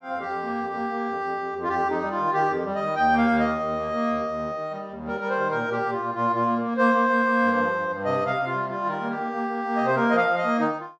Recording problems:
none

